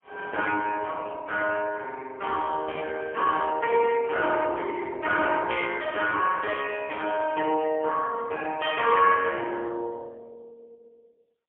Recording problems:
telephone audio; 260 Hz to 3.1 kHz, AMR-NB, then MP3

